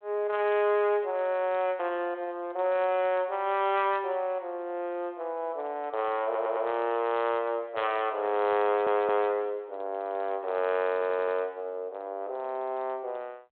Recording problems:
phone line; 340 Hz to 3.5 kHz, G.726
stutter; at 6 s, at 8.5 s and at 11 s

